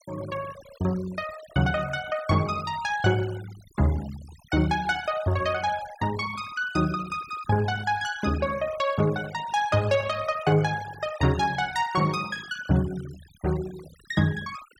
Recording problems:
noise reduction artefacts; signal-to-artefact ratio 18 dB

